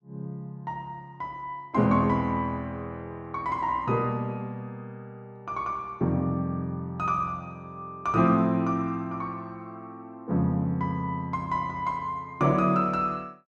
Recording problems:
none

